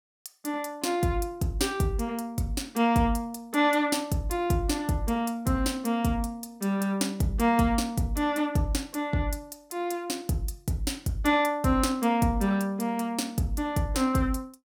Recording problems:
none

